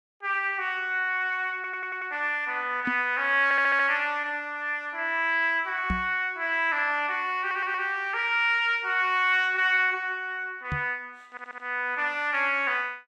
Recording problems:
audio stuttering; 4 times, first at 1.5 s
knock on the microphone; at 3 s, at 6 s and at 11 s; peak -1 dB vs average level

